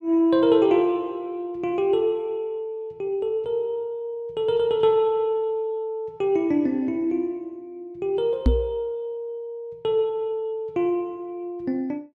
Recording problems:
microphone thump; at 8.5 s; peak +8 dB vs average level

